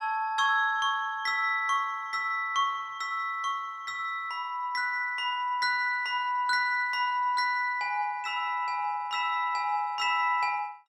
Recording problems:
none

